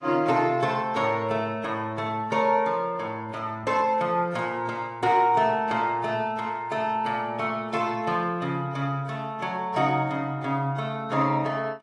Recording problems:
lossy compression; AAC, log-spectral distance 2 dB

